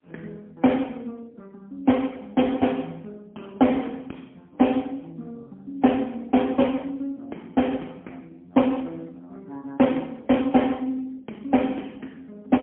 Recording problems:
phone line; 190 Hz to 3.3 kHz, AMR-NB, then MP3

